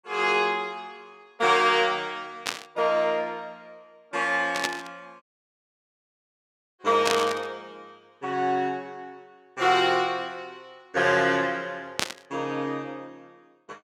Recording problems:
static burst; 4 times, first at 2.5 s; peak +3 dB vs average level
audio cutting out; at 5 s for 1.5 s

